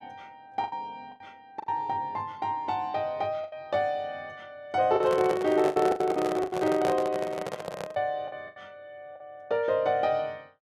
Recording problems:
lost packets; 8% of the sound replaced, filled with the last packet
microphone handling noise; from 5 to 8 s; peak +2 dB vs average level

